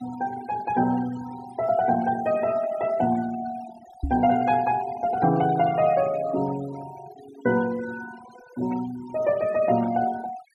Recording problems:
noise reduction artefacts; signal-to-artefact ratio 17 dB
microphone thump; at 4 s; peak 0 dB vs average level

